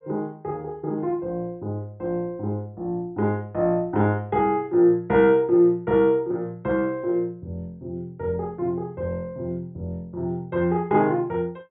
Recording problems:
treble cut off; nothing above 4 kHz

